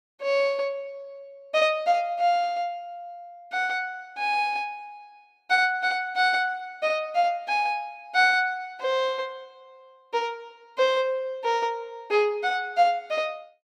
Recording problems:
none

